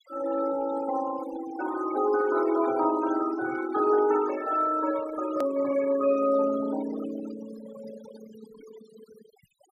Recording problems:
noise reduction artefacts; signal-to-artefact ratio 14 dB
click at an edit; at 5.5 s

